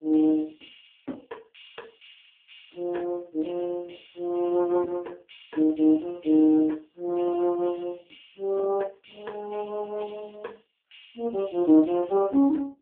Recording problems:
phone line; 240 Hz to 3.5 kHz, AMR-NB

